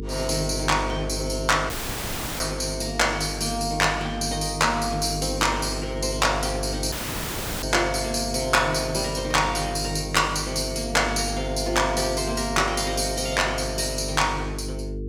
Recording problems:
hum; 50 Hz, harmonics up to 450 Hz, SNR 9 dB
dropout; at 1.5 s for 0.5 s and at 7 s for 0.5 s

